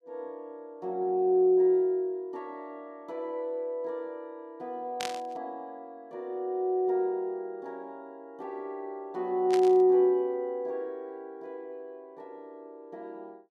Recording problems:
burst of static; at 5 s and at 9.5 s; peak -3 dB vs average level

